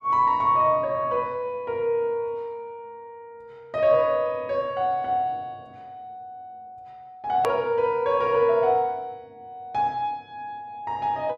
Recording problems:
edit click; at 7.5 s

